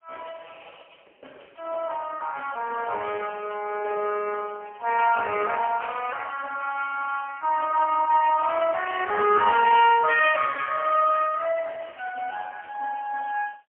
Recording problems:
telephone audio; 370 Hz to 3.1 kHz, AMR-NB, then MP3

